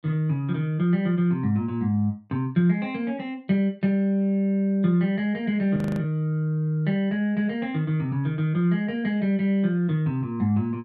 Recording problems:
frozen audio; at 6 s

